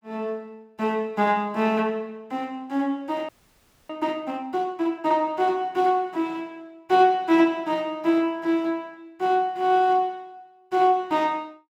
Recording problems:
audio freezing; at 3.5 s for 0.5 s

